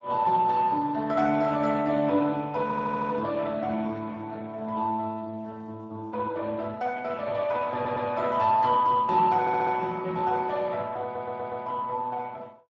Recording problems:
lossy codec; Speex, log-spectral distance 3 dB
stutter; 4 times, first at 2.5 s

